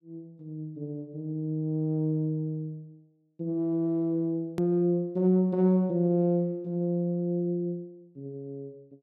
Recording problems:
click at an edit; at 4.5 s

